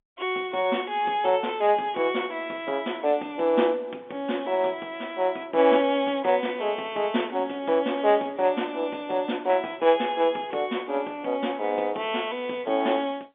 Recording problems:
phone line; 190 Hz to 3.6 kHz, G.711

